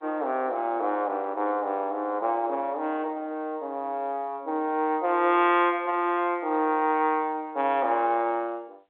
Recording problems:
phone line; 220 Hz to 3.7 kHz, G.711

